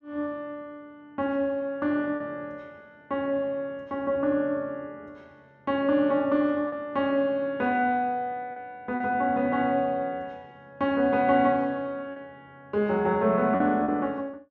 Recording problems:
packet loss; 2% of the sound replaced, filled with repeated pitch periods

